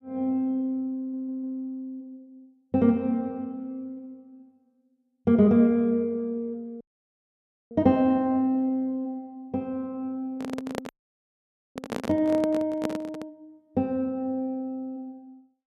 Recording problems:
stutter; at 1 s
dropout; at 7 s for 1 s and at 11 s for 1 s
handling noise; from 10 to 13 s; peak 0 dB vs average level

